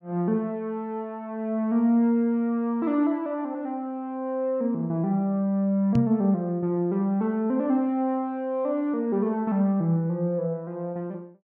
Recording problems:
microphone thump; at 6 s; peak +5 dB vs average level

